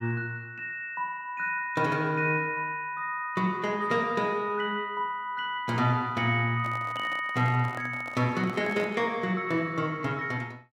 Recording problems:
handling noise; from 6.5 to 9 s; peak -7 dB vs average level

